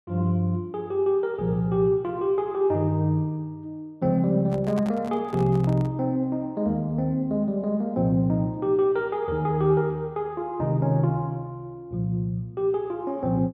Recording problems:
handling noise; from 4.5 to 6 s; peak -7 dB vs average level

